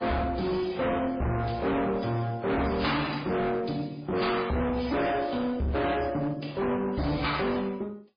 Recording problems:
codec artefacts; AAC, then MP3, log-spectral distance 5 dB, nothing above 5 kHz
distorted audio; hard clipping, signal-to-distortion ratio 6 dB

